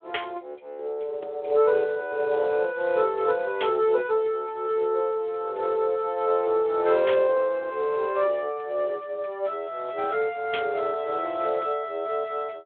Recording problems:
phone line; 320 Hz to 3.4 kHz, Speex

